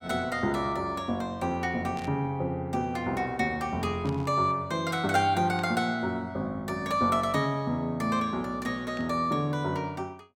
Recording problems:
static burst; 4 times, first at 2 s; peak -12 dB vs average level

